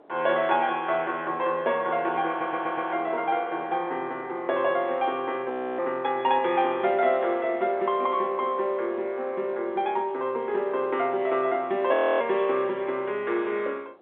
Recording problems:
telephone audio; 300 Hz to 3.7 kHz, G.711
wind on the microphone; below 820 Hz, SNR 22 dB
stutter; at 2.5 s
audio freezing; at 5.5 s and at 12 s

